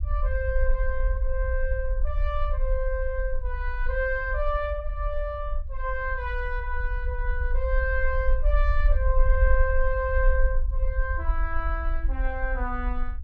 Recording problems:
low-frequency rumble; below 52 Hz, SNR -2 dB

